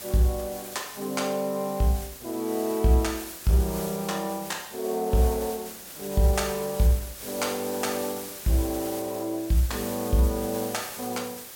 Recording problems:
hiss; slope -1 dB per octave, SNR 10 dB

